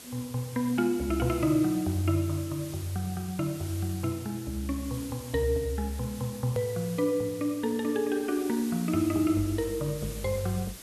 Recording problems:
background hiss; SNR 14 dB
hard cut with a click; at 6.5 s

